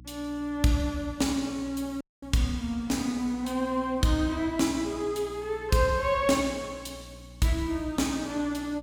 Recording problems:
hum; 60 Hz, harmonics up to 300 Hz, SNR 20 dB
dropout; at 2 s

